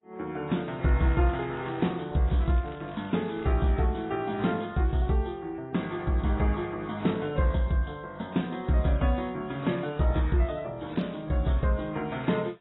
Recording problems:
lossy compression; AAC, then AAC, log-spectral distance 4 dB, nothing above 3.9 kHz
crackling; at 1 s, from 2.5 to 3.5 s and at 11 s; loose cable, SNR 27 dB

